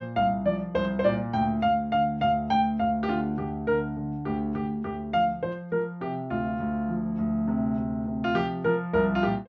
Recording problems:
low-pass filter; nothing above 8 kHz

